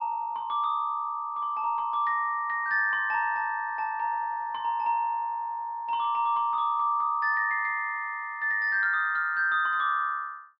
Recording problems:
low-pass filter; nothing above 5.5 kHz

